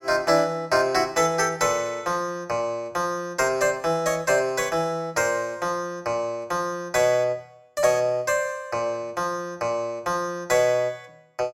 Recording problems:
none

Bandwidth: 16.5 kHz